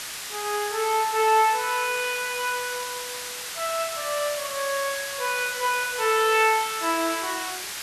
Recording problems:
hiss; slope +2 dB per octave, SNR 7 dB

